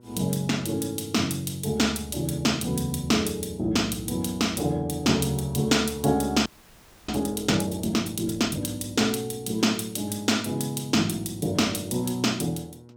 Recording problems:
hum; 60 Hz, harmonics up to 1.1 kHz, SNR 25 dB
audio freezing; at 6.5 s for 0.5 s

